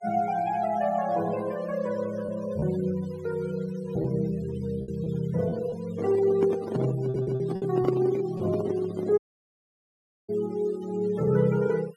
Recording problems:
denoising artefacts; signal-to-artefact ratio 20 dB
packet loss; 3% of the sound replaced, filled with repeated pitch periods
microphone handling noise; from 6 to 9 s; peak +3 dB vs average level
audio stuttering; at 7 s
dropout; at 9 s for 1 s

